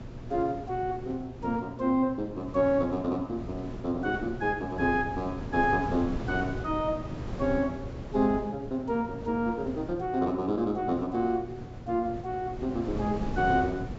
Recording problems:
treble cut off; nothing above 8 kHz
hum; 60 Hz, harmonics up to 480 Hz, SNR 18 dB
wind noise; below 340 Hz, SNR 11 dB

